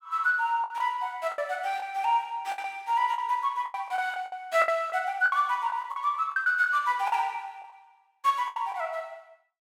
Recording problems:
lost packets; 11% of the sound replaced, filled with the last packet

